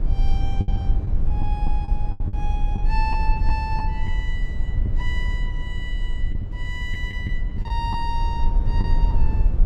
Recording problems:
low-frequency rumble; below 56 Hz, strongest tone 20 Hz, SNR -7 dB
lost packets; 6% of the sound replaced, filled with the last packet

